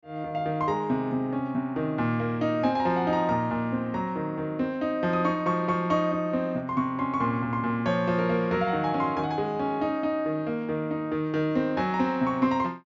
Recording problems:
treble cut off; nothing above 7.1 kHz

